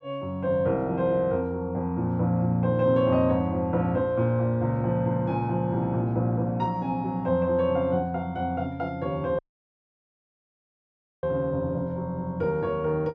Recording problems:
audio cutting out; at 9.5 s for 2 s

